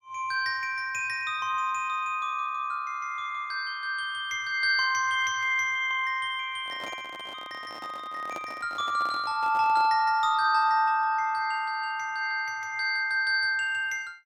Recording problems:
microphone handling noise; from 6.5 to 10 s; peak -8 dB vs average level

